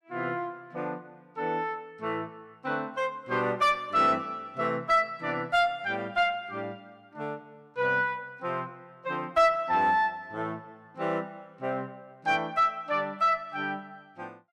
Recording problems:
distorted audio; soft clipping, signal-to-distortion ratio 10 dB

